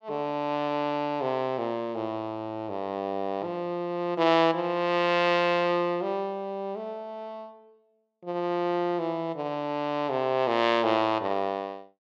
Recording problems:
none

